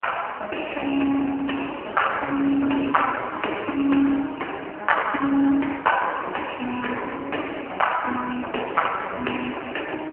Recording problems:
telephone audio; 240 Hz to 3.1 kHz, AMR-NB

